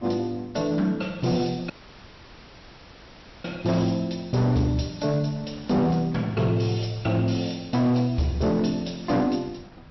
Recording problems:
treble missing; nothing above 5.7 kHz
lossy codec; MP3, log-spectral distance 3 dB
distorted audio; hard clipping, signal-to-distortion ratio 10 dB
wind on the microphone; below 740 Hz, SNR 23 dB
audio cutting out; at 1.5 s for 1.5 s

